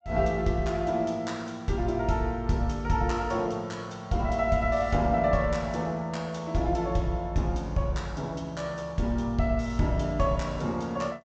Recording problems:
treble missing; nothing above 8 kHz

